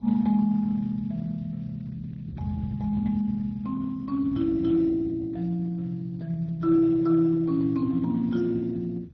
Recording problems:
lossy codec; Speex, then MP2, log-spectral distance 2 dB, nothing above 6 kHz
wind on the microphone; below 160 Hz, SNR 16 dB

